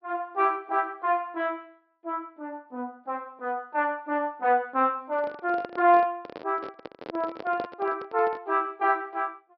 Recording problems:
low-pass filter; nothing above 5.5 kHz
microphone handling noise; from 5 to 8.5 s; peak -4 dB vs average level

